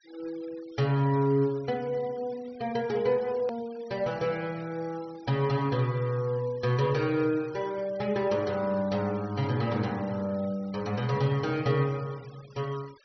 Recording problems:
low-pass filter; nothing above 5.8 kHz
denoising artefacts; signal-to-artefact ratio 22 dB
edit click; at 3.5 s

